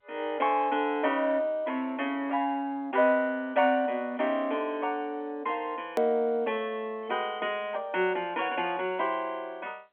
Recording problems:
telephone audio; 220 Hz to 3.3 kHz, G.711
edit click; at 6 s

